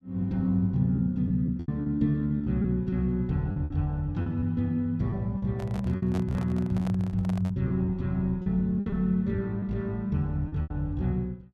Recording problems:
packet loss; 9% of the sound replaced, filled with repeated pitch periods
microphone handling noise; from 5.5 to 7.5 s; peak -8 dB vs average level

